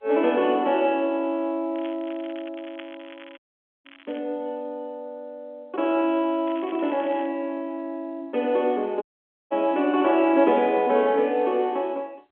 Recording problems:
telephone audio; 280 Hz to 3.5 kHz, G.711
crackling; from 2 to 4 s and at 6.5 s; loose cable, SNR 23 dB
dropout; at 3.5 s and at 9 s

